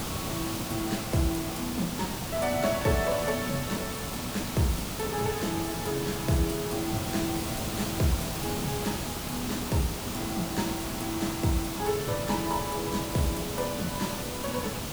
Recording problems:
hiss; SNR 2 dB

